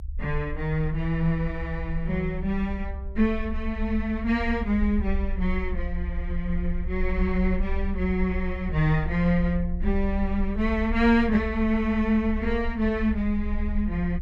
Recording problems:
rumble; below 66 Hz, strongest tone 22 Hz, SNR 7 dB

